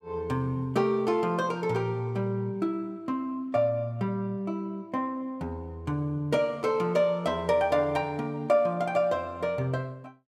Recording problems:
none

